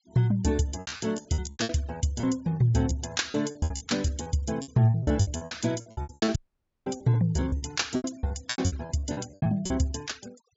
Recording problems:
treble missing; nothing above 7.5 kHz
noise reduction artefacts; signal-to-artefact ratio 25 dB
packet loss; 20% of the sound replaced, filled with repeated pitch periods
dropout; at 6.5 s for 0.5 s

